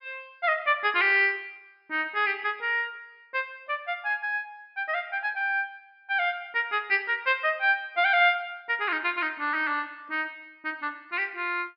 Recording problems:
treble cut off; nothing above 5.5 kHz

